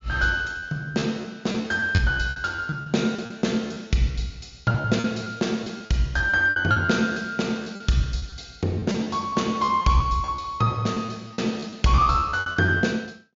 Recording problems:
low-pass filter; nothing above 7.2 kHz
lost packets; 13% of the sound replaced, filled with repeated pitch periods

